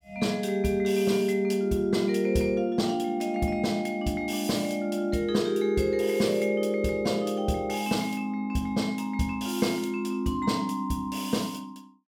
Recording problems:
none

